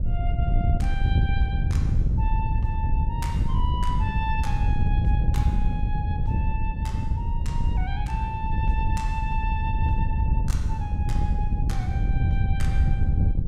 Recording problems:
wind noise; below 100 Hz, SNR -9 dB

